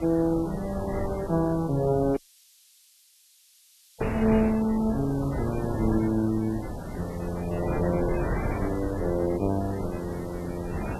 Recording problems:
codec artefacts; MP3, log-spectral distance 6 dB, nothing above 10.7 kHz
background hiss; slope +8 dB per octave, SNR 27 dB
wind on the microphone; below 620 Hz, SNR 6 dB
audio cutting out; at 2 s for 2 s

